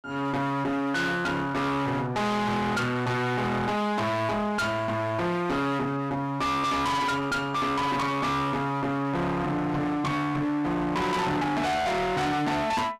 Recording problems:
distortion; hard clipping, uneven, signal-to-distortion ratio 5 dB

